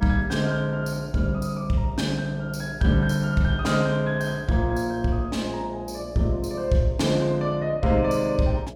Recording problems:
electrical hum; 60 Hz, harmonics up to 660 Hz, SNR 17 dB

